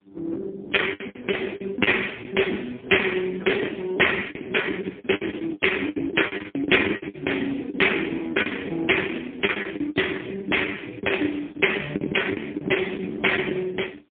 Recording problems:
telephone audio; 260 Hz to 3.4 kHz, AMR-NB, then MP3
packet loss; 17% of the sound replaced, filled with the last packet

